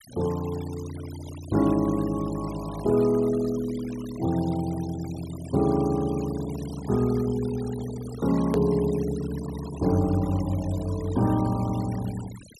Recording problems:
noise reduction artefacts; signal-to-artefact ratio 18 dB
hard cut with a click; at 8.5 s

